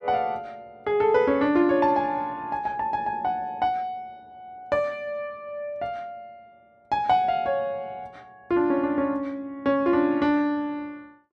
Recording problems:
none

